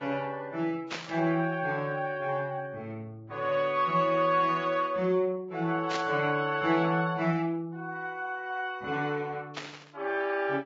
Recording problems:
codec artefacts; Vorbis, log-spectral distance 2 dB, nothing above 6.2 kHz
burst of static; at 1 s, at 6 s and at 9.5 s; peak -2 dB vs average level

